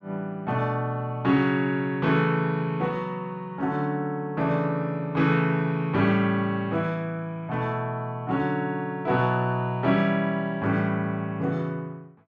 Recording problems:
none

